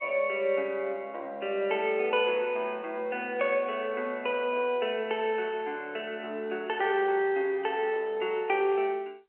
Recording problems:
phone line; 320 Hz to 3.1 kHz, G.711

